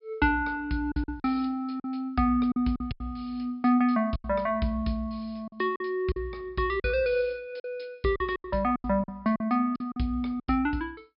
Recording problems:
low-pass filter; nothing above 5.5 kHz
packet loss; 10% of the sound replaced, filled with silence

